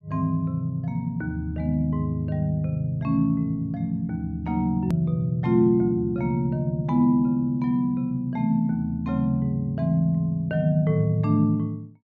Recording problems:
hard cut with a click; at 5 s

